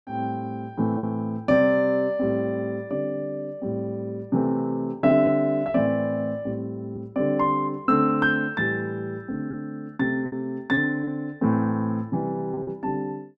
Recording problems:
packet loss; 3% of the sound replaced, filled with repeated pitch periods

